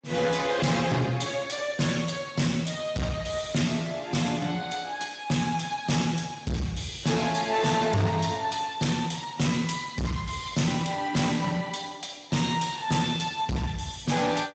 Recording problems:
codec artefacts; Speex, log-spectral distance 5 dB, nothing above 7.8 kHz
distortion; hard clipping, signal-to-distortion ratio 7 dB

